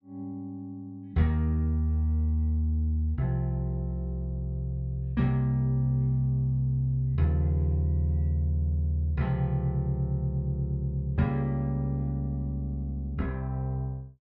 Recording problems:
none

